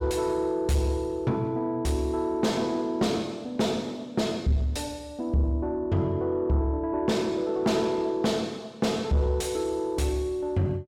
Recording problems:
distortion; soft clipping, signal-to-distortion ratio 10 dB

